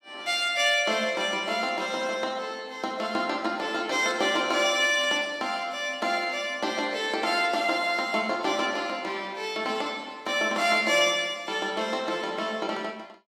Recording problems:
static burst; at 1 s and at 5 s; peak -11 dB vs average level

